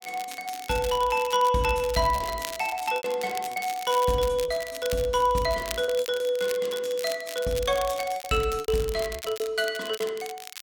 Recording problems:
crackle; vinyl, SNR 13 dB
packet loss; 8% of the sound replaced, filled with repeated pitch periods

